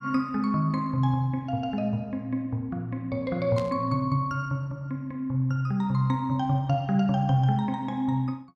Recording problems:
burst of static; at 3.5 s; peak -9 dB vs average level

